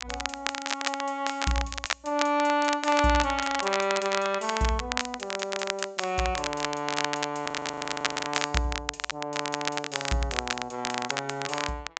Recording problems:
treble missing; nothing above 8 kHz
crackling; vinyl, SNR 3 dB
audio freezing; at 7.5 s for 1 s

